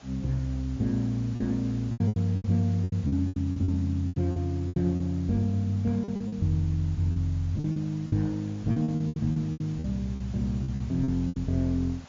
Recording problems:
lossy compression; MP3, log-spectral distance 2 dB, nothing above 13.1 kHz
background hiss; slope -3 dB per octave, SNR 24 dB
lost packets; 14% of the sound replaced, filled with repeated pitch periods

